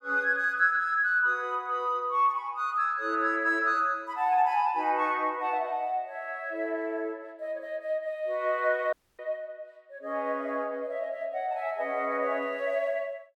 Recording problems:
dropout; at 9 s

